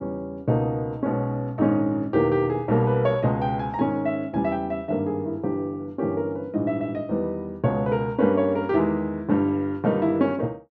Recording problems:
none

